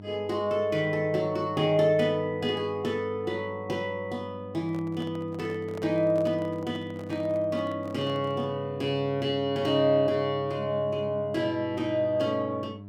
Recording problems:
hum; 50 Hz, harmonics up to 700 Hz, SNR 15 dB
handling noise; from 4.5 to 8.5 s; peak -10 dB vs average level

